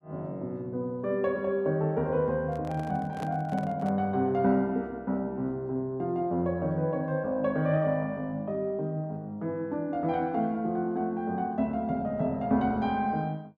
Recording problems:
microphone handling noise; from 2.5 to 4 s; peak -6 dB vs average level

